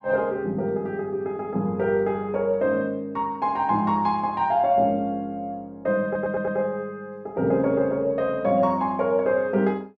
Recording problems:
stutter; at 6 s

